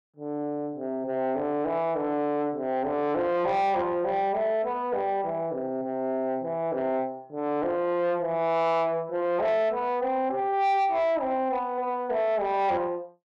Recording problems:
distortion; soft clipping, signal-to-distortion ratio 12 dB

